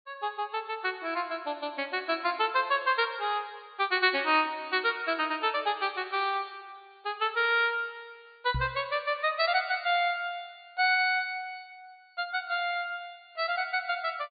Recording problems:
treble cut off; nothing above 4.6 kHz
microphone bump; at 8.5 s; peak -1 dB vs average level

